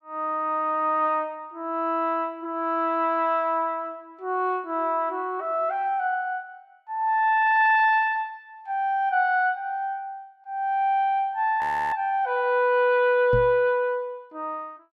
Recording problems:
frozen audio; at 12 s
microphone bump; at 13 s; peak -1 dB vs average level

